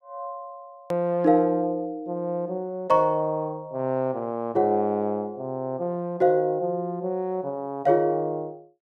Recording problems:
edit click; at 1 s

